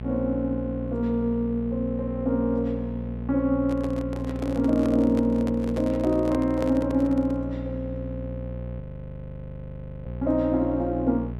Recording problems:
hum; 60 Hz, harmonics up to 840 Hz, SNR 9 dB
handling noise; from 3.5 to 7.5 s; peak -4 dB vs average level
frozen audio; at 9 s for 1.5 s

